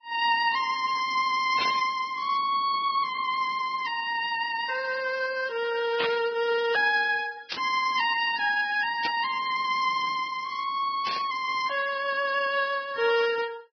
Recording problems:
treble cut off; nothing above 5.2 kHz
lossy compression; Vorbis, then Vorbis, log-spectral distance 3 dB
burst of static; 5 times, first at 1.5 s; peak 0 dB vs average level

